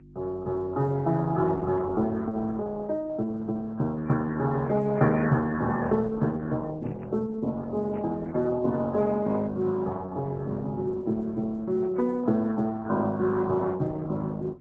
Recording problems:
codec artefacts; MP3, then Opus, log-spectral distance 2 dB
hum; 50 Hz, harmonics up to 350 Hz, SNR 23 dB
microphone handling noise; from 6 to 9 s; peak -9 dB vs average level

